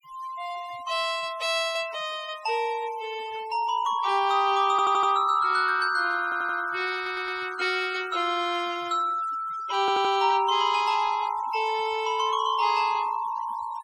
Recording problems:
noise reduction artefacts; signal-to-artefact ratio 21 dB
audio stuttering; 4 times, first at 4.5 s

